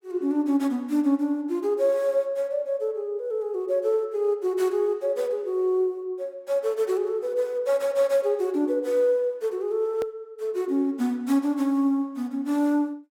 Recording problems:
hard cut with a click; at 10 s

